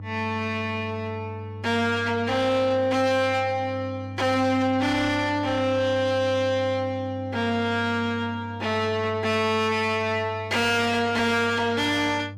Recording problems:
distorted audio; soft clipping, signal-to-distortion ratio 7 dB
hum; 50 Hz, harmonics up to 500 Hz, SNR 13 dB

